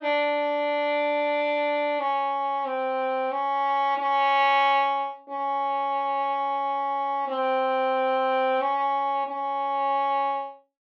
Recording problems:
none

